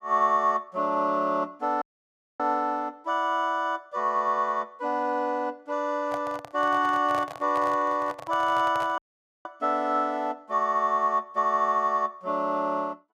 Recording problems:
audio cutting out; at 2 s for 0.5 s and at 9 s
handling noise; from 6 to 9.5 s; peak -6 dB vs average level

